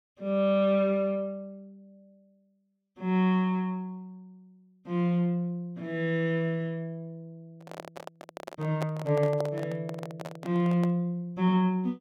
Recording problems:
microphone handling noise; from 7.5 to 11 s; peak -3 dB vs average level

